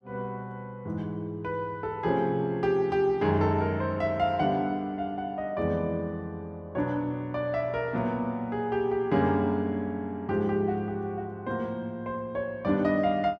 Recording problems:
none

